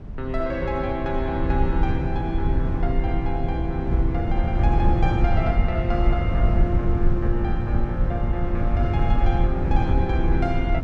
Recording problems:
low-frequency rumble; below 92 Hz, SNR -3 dB

